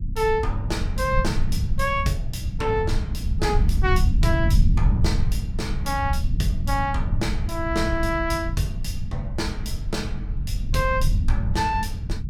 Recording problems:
low-frequency rumble; below 94 Hz, SNR -1 dB

